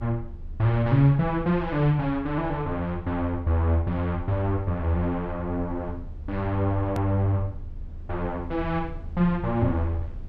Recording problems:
low-frequency rumble; below 78 Hz, strongest tone 26 Hz, SNR 14 dB
edit click; at 7 s

